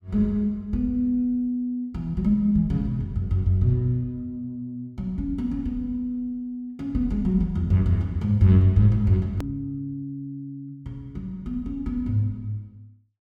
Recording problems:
edit click; at 9.5 s

